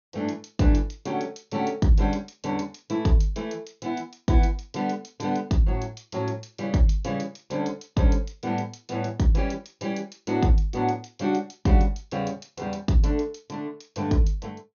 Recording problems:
treble missing; nothing above 6.7 kHz

